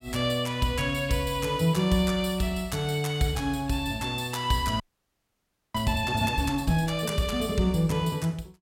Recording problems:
frozen audio; at 5 s for 1 s

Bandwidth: 16.5 kHz